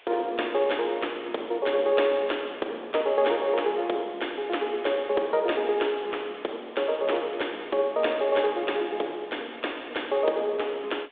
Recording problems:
phone line; 320 Hz to 3.6 kHz, G.726
hiss; SNR 26 dB

